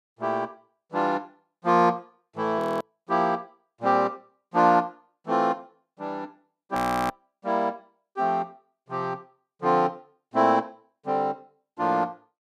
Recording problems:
frozen audio; at 2.5 s and at 7 s

